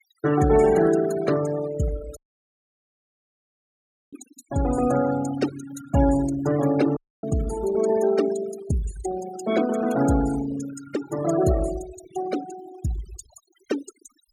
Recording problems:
noise reduction artefacts; signal-to-artefact ratio 13 dB
dropout; at 2 s for 2 s and at 7 s

